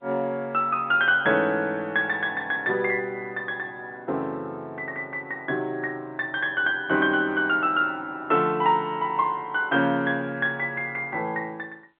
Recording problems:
phone line; 190 Hz to 3.6 kHz, G.711

